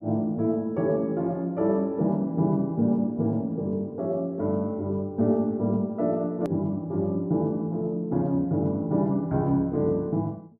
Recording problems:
hard cut with a click; at 6.5 s

